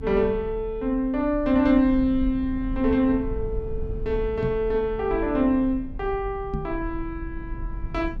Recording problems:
low-frequency rumble; below 64 Hz, SNR 12 dB
knock on the microphone; at 4.5 s and at 6.5 s; peak -1 dB vs average level

